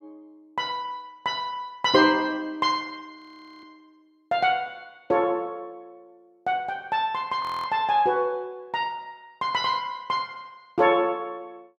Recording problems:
frozen audio; at 3 s and at 7.5 s

